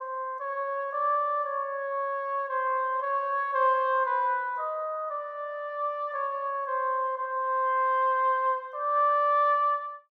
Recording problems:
none

